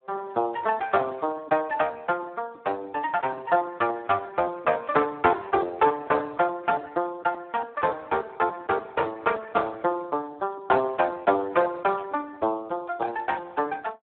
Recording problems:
phone line; 260 Hz to 2.8 kHz, Speex
burst of static; at 12 s; peak -21 dB vs average level

